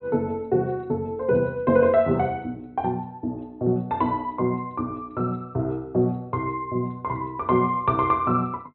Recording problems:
low-pass filter; nothing above 4 kHz

